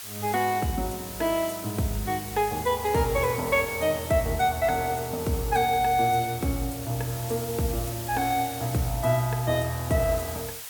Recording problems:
background hiss; SNR 10 dB

